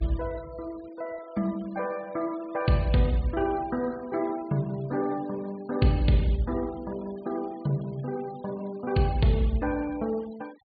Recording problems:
treble missing; nothing above 4.7 kHz
noise reduction artefacts; signal-to-artefact ratio 23 dB

